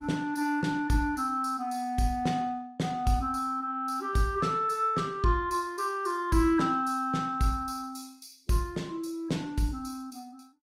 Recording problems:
codec artefacts; Opus, log-spectral distance 3 dB, nothing above 16 kHz

